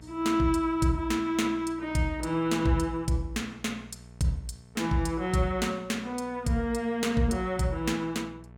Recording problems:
hum; 60 Hz, harmonics up to 1.3 kHz, SNR 22 dB

